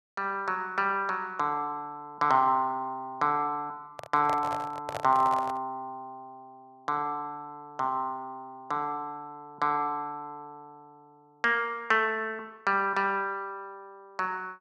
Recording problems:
microphone handling noise; from 4 to 5.5 s; peak -2 dB vs average level

